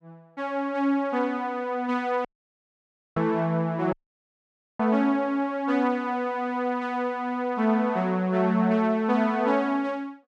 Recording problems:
audio cutting out; at 2.5 s for 1 s and at 4 s for 1 s

